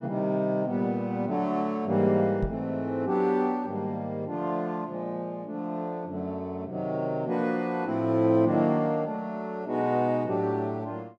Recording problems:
microphone bump; at 2.5 s; peak +1 dB vs average level

